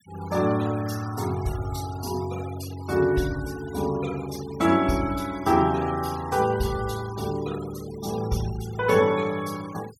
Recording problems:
denoising artefacts; signal-to-artefact ratio 18 dB

